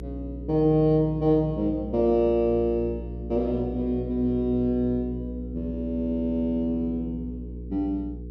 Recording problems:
electrical hum; 60 Hz, harmonics up to 480 Hz, SNR 11 dB

